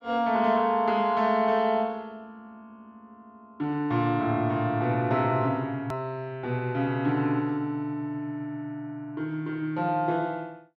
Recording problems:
click at an edit; at 6 s

